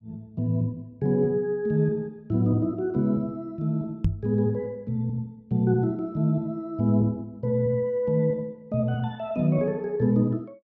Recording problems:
microphone thump; at 4 s; peak +6 dB vs average level

